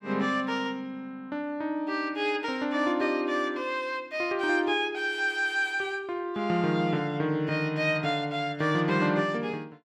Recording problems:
none

